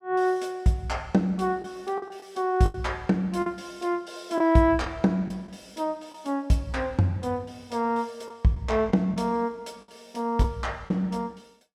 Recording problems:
lost packets; 4% of the sound replaced, filled with the last packet

